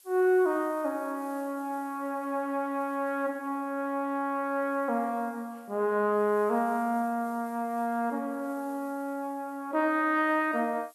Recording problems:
background hiss; slope +2 dB per octave, SNR 27 dB

